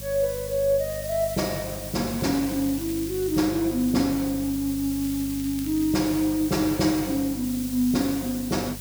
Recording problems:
electrical hum; 50 Hz, harmonics up to 450 Hz, SNR 14 dB
background hiss; slope +2 dB per octave, SNR 11 dB
crackle; from 2 to 3.5 s and from 5 to 6.5 s; loose cable, SNR 21 dB

